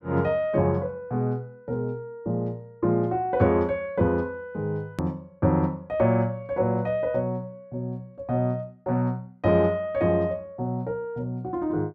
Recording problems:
click at an edit; at 5 s

